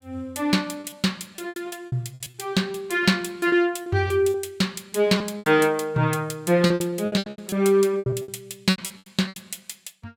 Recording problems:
lost packets; 16% of the sound replaced, filled with repeated pitch periods

